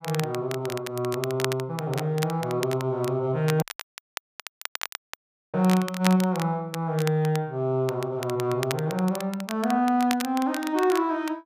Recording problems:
crackle; vinyl, SNR 11 dB
dropout; at 3.5 s for 2 s

